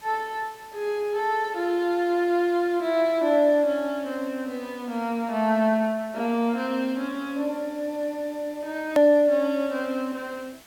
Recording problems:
hiss; slope -1 dB per octave, SNR 25 dB
click at an edit; at 9 s

